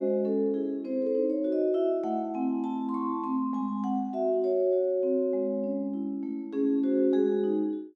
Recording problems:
none

